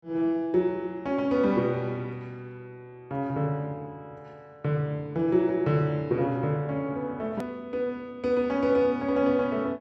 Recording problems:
click at an edit; at 7.5 s

